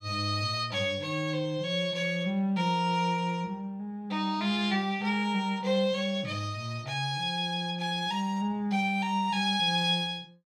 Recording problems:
none

